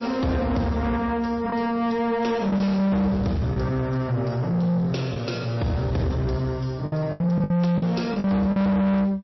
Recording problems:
codec artefacts; MP3, log-spectral distance 2 dB, nothing above 5.7 kHz
distorted audio; soft clipping, signal-to-distortion ratio 6 dB
lost packets; 5% of the sound replaced, filled with the last packet

